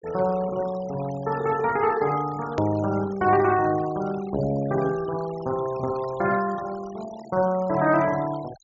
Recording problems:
treble cut off; nothing above 7.2 kHz
denoising artefacts; signal-to-artefact ratio 18 dB
edit click; at 2.5 s

